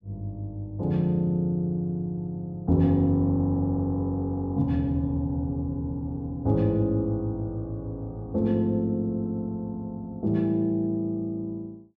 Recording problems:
none

